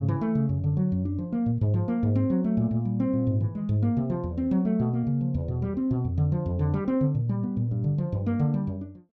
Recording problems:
none

